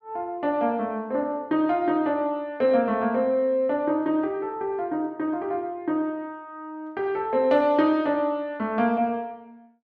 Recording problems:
none

